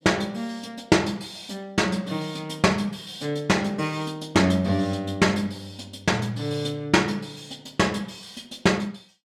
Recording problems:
none

